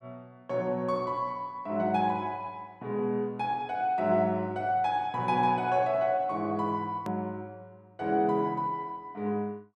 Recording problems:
hard cut with a click; at 7 s

